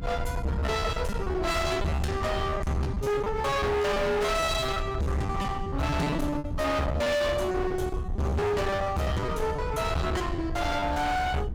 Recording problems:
distorted audio; hard clipping, signal-to-distortion ratio 6 dB
low-frequency rumble; below 290 Hz, SNR 6 dB
packet loss; 14% of the sound replaced, filled with repeated pitch periods

